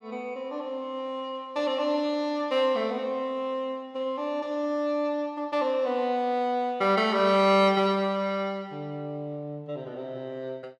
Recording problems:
none

